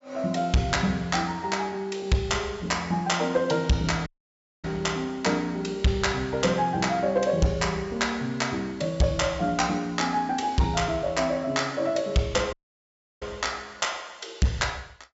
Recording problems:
treble missing; nothing above 8 kHz
distorted audio; hard clipping, signal-to-distortion ratio 12 dB
dropout; at 4 s for 0.5 s and at 13 s for 0.5 s

